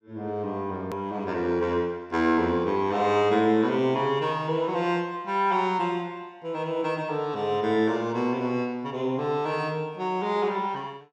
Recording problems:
hard cut with a click; at 1 s

